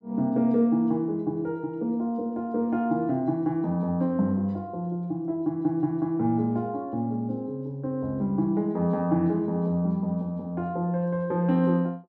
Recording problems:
none

